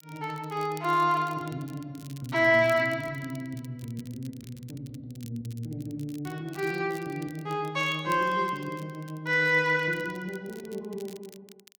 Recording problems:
crackle; vinyl, SNR 24 dB

